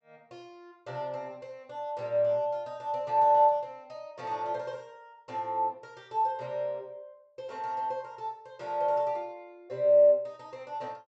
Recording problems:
low-pass filter; nothing above 8 kHz

